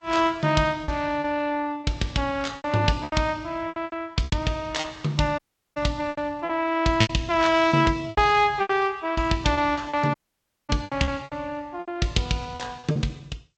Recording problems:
codec artefacts; Vorbis, then G.722, log-spectral distance 3 dB, nothing above 7.8 kHz
lost packets; 13% of the sound replaced, filled with repeated pitch periods
dropout; at 5.5 s and at 10 s for 0.5 s

